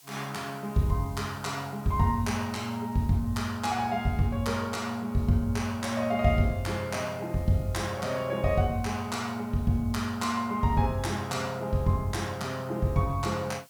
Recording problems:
hiss; slope +2 dB per octave, SNR 25 dB

